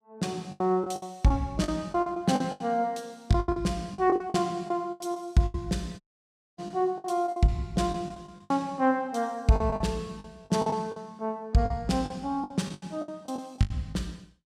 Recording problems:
lost packets; 14% of the sound replaced, filled with the last packet
audio cutting out; at 6 s for 0.5 s

